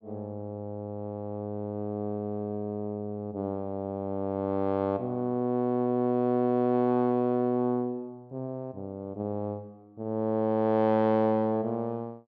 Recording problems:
none

